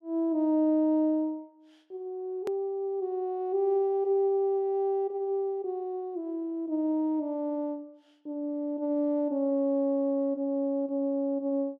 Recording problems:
click at an edit; at 2.5 s

